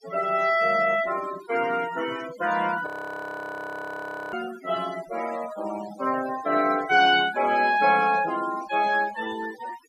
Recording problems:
noise reduction artefacts; signal-to-artefact ratio 14 dB
audio freezing; at 3 s for 1.5 s

